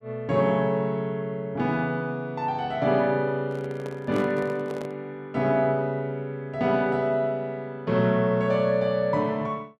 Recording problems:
handling noise; from 3.5 to 5 s; peak -6 dB vs average level

